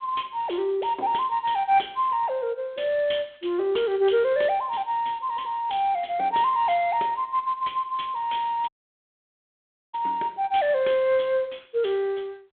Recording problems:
phone line; 300 Hz to 3.7 kHz, G.726
dropout; at 8.5 s for 1.5 s

